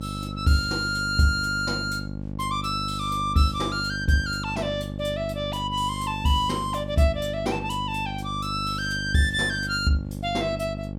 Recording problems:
hum; 50 Hz, harmonics up to 850 Hz, SNR 8 dB

